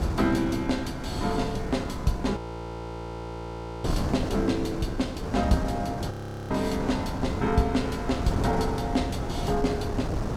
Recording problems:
wind on the microphone; below 410 Hz, SNR 3 dB
frozen audio; at 2.5 s for 1.5 s and at 6 s

